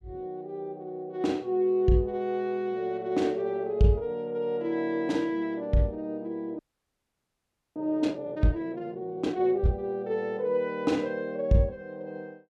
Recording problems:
frozen audio; at 6.5 s for 1 s

